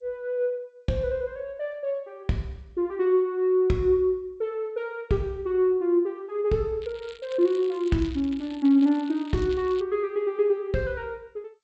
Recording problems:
lossy compression; G.722, log-spectral distance 2 dB, nothing above 7.8 kHz
crackle; from 7 to 10 s; loose cable, SNR 21 dB

